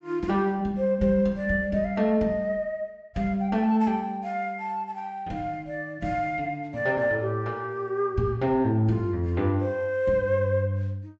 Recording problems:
low-pass filter; nothing above 8 kHz

